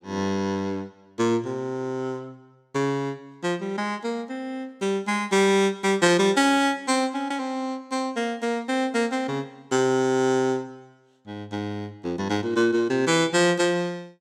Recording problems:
none

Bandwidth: 16.5 kHz